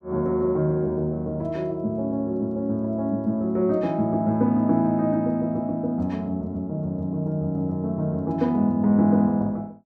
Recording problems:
none

